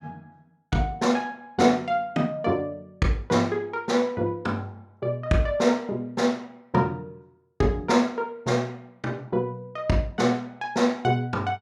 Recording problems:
none

